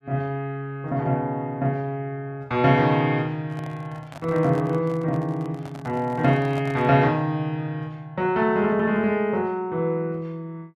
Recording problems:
handling noise; from 3.5 to 7 s; peak -10 dB vs average level

